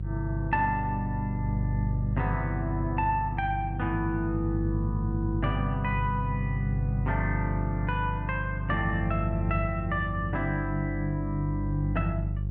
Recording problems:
hum; 50 Hz, harmonics up to 350 Hz, SNR 1 dB

